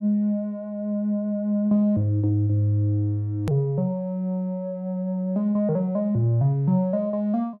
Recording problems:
hard cut with a click; at 3.5 s

